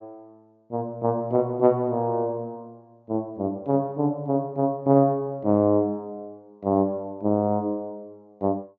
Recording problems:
treble missing; nothing above 7.3 kHz

